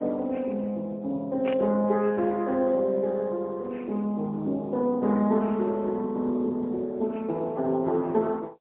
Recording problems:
telephone audio; 170 Hz to 2.6 kHz, AMR-NB, then MP3
static burst; at 1.5 s; peak -9 dB vs average level

